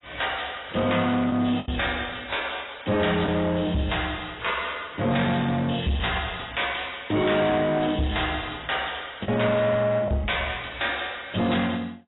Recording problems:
codec artefacts; AAC, log-spectral distance 12 dB, nothing above 3.8 kHz
distorted audio; soft clipping, signal-to-distortion ratio 10 dB
lost packets; 1.5% of the sound replaced, filled with the last packet

